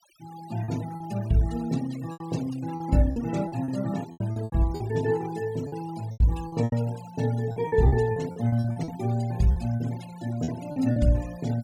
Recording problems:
noise reduction artefacts; signal-to-artefact ratio 19 dB
lost packets; 12% of the sound replaced, filled with repeated pitch periods

